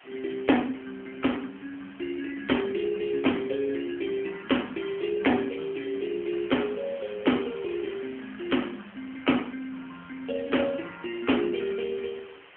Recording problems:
phone line; 220 Hz to 3.2 kHz, AMR-NB
background hiss; SNR 20 dB

